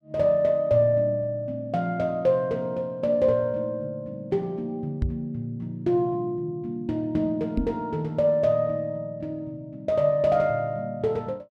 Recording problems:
knock on the microphone; at 5 s and at 7.5 s; peak +3 dB vs average level

